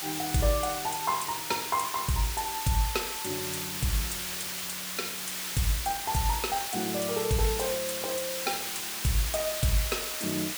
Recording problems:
background hiss; slope +1 dB per octave, SNR 1 dB

